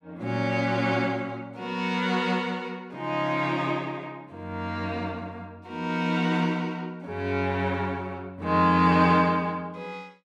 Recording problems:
none

